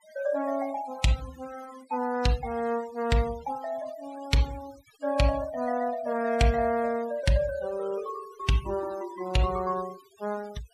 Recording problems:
noise reduction artefacts; signal-to-artefact ratio 18 dB

